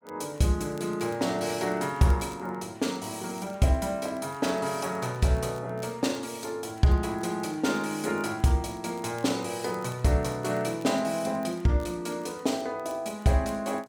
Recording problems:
crackle; vinyl, SNR 29 dB

